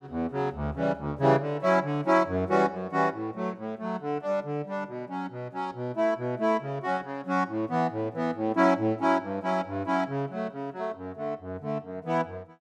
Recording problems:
none

